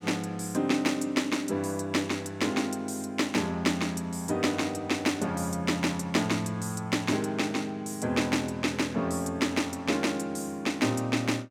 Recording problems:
none

